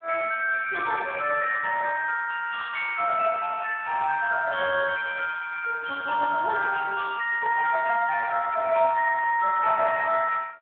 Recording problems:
phone line; 320 Hz to 2.6 kHz, Speex

